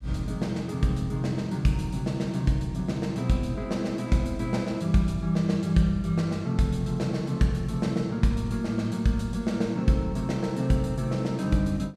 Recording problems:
none

